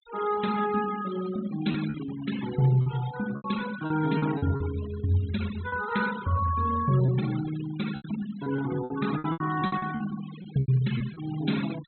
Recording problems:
treble cut off; nothing above 4.2 kHz
noise reduction artefacts; signal-to-artefact ratio 13 dB
lost packets; 9% of the sound replaced, filled with repeated pitch periods

